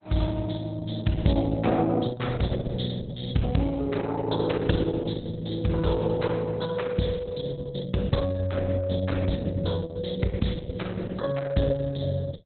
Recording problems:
lossy codec; Opus, log-spectral distance 5 dB, nothing above 4 kHz

